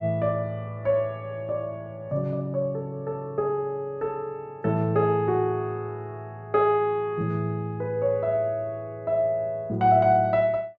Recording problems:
none

